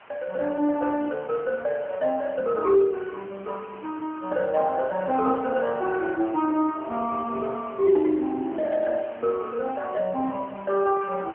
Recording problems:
telephone audio; 220 Hz to 2.8 kHz, AMR-NB
background hiss; SNR 23 dB

